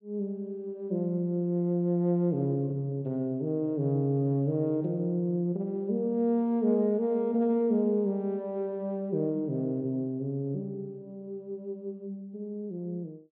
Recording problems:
low-pass filter; nothing above 4.2 kHz

